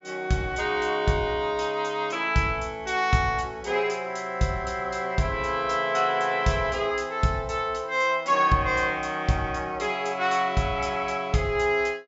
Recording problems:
treble missing; nothing above 8 kHz

